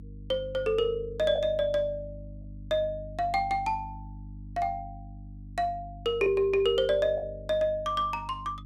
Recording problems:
hum; 50 Hz, harmonics up to 300 Hz, SNR 15 dB
packet loss; 1.2% of the sound replaced, filled with the last packet

